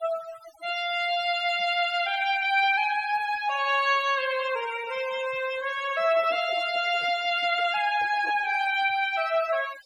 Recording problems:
denoising artefacts; signal-to-artefact ratio 15 dB
handling noise; from 6 to 8.5 s; peak -12 dB vs average level

